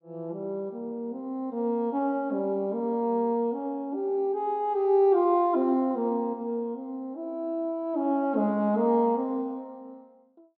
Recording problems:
none

